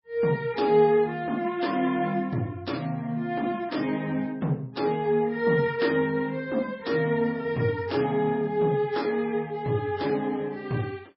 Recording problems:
codec artefacts; MP3, log-spectral distance 2 dB, nothing above 5.5 kHz

